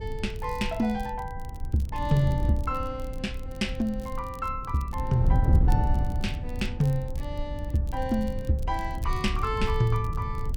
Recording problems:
low-frequency rumble; below 76 Hz, SNR 8 dB
wind noise; below 120 Hz, SNR 3 dB
crackle; vinyl, SNR 25 dB

